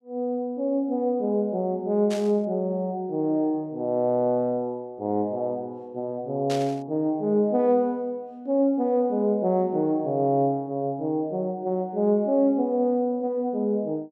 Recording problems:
burst of static; at 2 s and at 6.5 s; peak -6 dB vs average level

